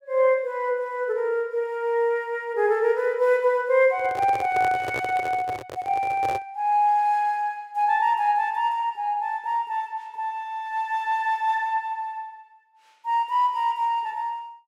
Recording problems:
microphone handling noise; from 4 to 6.5 s; peak -4 dB vs average level

